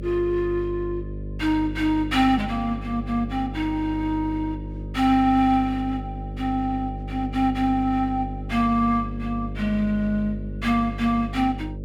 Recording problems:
hum; 50 Hz, harmonics up to 600 Hz, SNR 9 dB

